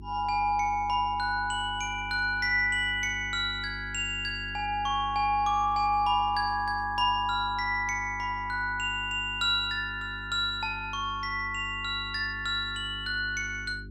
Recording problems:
hum; 50 Hz, harmonics up to 400 Hz, SNR 16 dB

